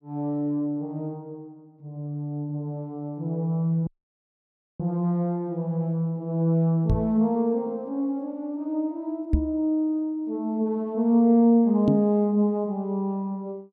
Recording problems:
dropout; at 4 s for 1 s
knock on the microphone; at 7 s, at 9.5 s and at 12 s; peak +7 dB vs average level

